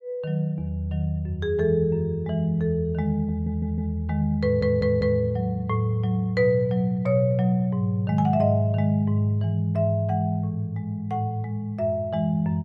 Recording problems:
audio stuttering; at 3.5 s and at 4.5 s

